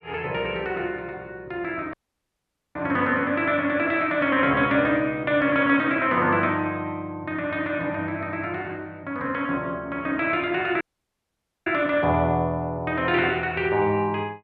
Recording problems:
dropout; at 2 s for 1 s and at 11 s for 1 s

